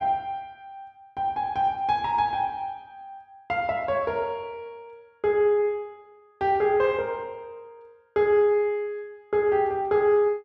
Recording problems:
none

